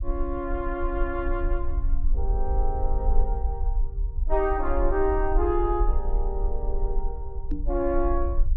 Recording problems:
low-frequency rumble; below 48 Hz, SNR 1 dB
microphone thump; at 7.5 s; peak 0 dB vs average level

